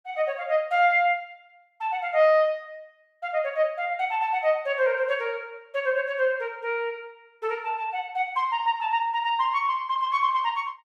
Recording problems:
none

